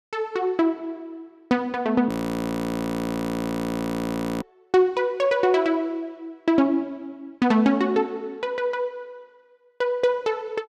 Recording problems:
frozen audio; at 2 s for 2.5 s

